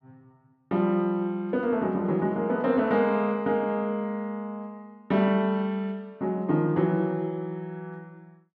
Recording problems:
none

